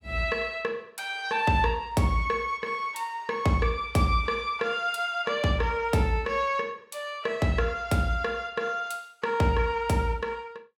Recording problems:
none

